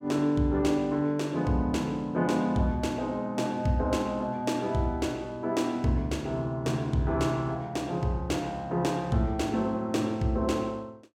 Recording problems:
none

